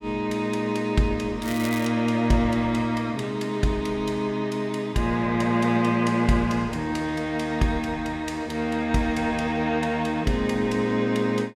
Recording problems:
crackle; at 1.5 s; loose cable, SNR 14 dB

